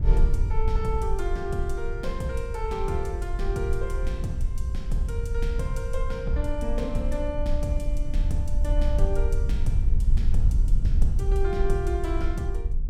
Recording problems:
rumble; below 56 Hz, SNR -3 dB

